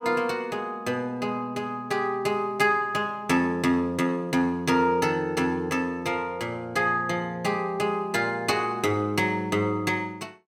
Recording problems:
none

